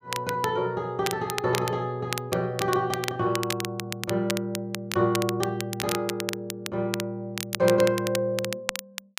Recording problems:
crackle; vinyl, SNR 7 dB

